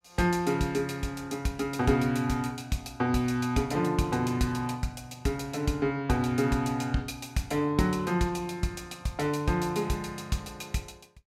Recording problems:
none

